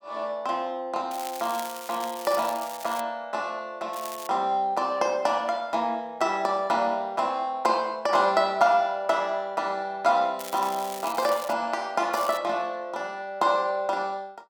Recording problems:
crackling; 4 times, first at 1 s; loose cable, SNR 14 dB

